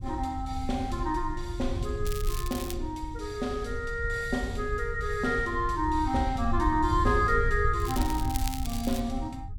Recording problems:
rumble; below 84 Hz, SNR 5 dB
crackling; at 2 s and from 8 to 9 s; loose cable, SNR 10 dB

